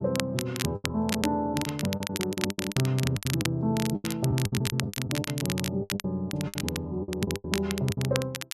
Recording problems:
crackle; vinyl, SNR 5 dB
packet loss; 17% of the sound replaced, filled with the last packet

